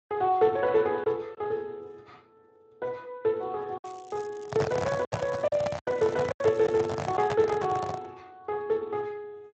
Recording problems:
codec artefacts; Speex, log-spectral distance 3 dB
packet loss; 4% of the sound replaced, filled with silence
crackling; from 4 to 7.5 s; loose cable, SNR 27 dB
microphone handling noise; from 4.5 to 8 s; peak +2 dB vs average level

